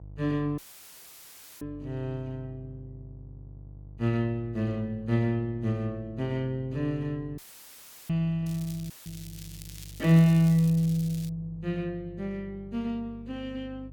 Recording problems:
hum; 50 Hz, harmonics up to 500 Hz, SNR 19 dB
dropout; at 0.5 s for 1 s, at 7.5 s for 0.5 s and at 9 s; filled with static
crackling; from 8.5 to 11 s; loose cable, SNR 18 dB

